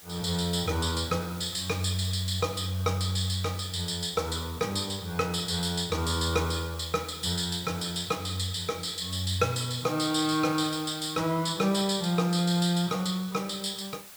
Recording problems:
background hiss; slope 0 dB per octave, SNR 17 dB

